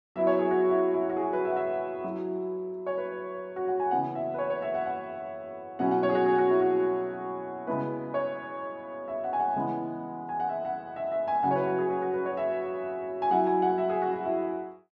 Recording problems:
none

